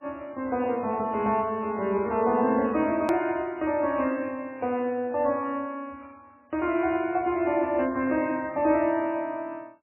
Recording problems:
lossy compression; MP3, log-spectral distance 2 dB, nothing above 13.1 kHz
edit click; at 3 s

